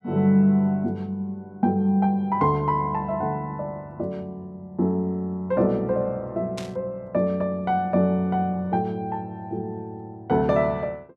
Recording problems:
burst of static; at 6.5 s; peak -8 dB vs average level

